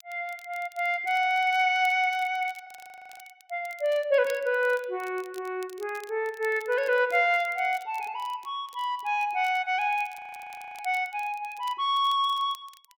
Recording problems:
crackle; vinyl, SNR 26 dB
audio freezing; at 2.5 s for 0.5 s and at 10 s for 0.5 s

